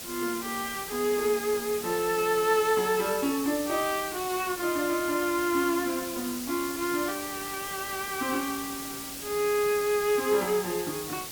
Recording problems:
background hiss; slope -1 dB per octave, SNR 8 dB

